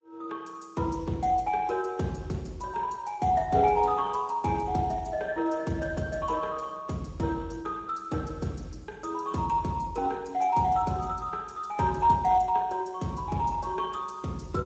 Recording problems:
lossy compression; Vorbis, then Speex, log-spectral distance 3 dB, nothing above 7.3 kHz

